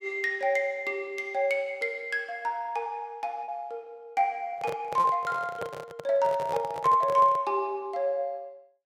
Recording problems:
lost packets; 0.9% of the sound replaced, filled with repeated pitch periods
microphone handling noise; from 4.5 to 7.5 s; peak -2 dB vs average level

